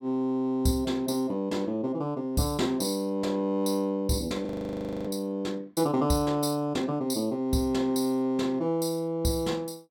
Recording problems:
audio freezing; at 4.5 s for 0.5 s

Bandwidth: 17 kHz